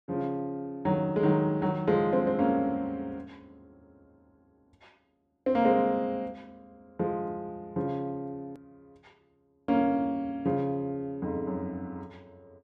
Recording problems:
edit click; at 8.5 s

